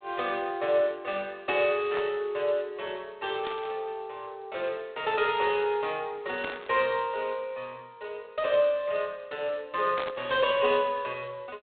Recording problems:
telephone audio; 220 Hz to 3.7 kHz, G.726
burst of static; 4 times, first at 2 s; peak -4 dB vs average level

